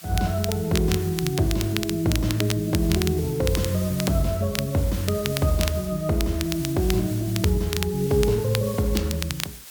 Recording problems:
hiss; slope +2 dB per octave, SNR 14 dB
crackling; vinyl, SNR 9 dB

